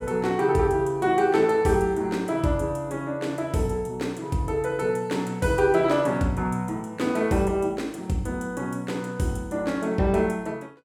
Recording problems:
none

